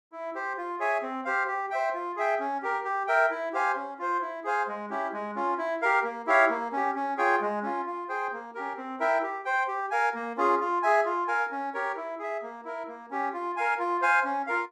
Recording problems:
none

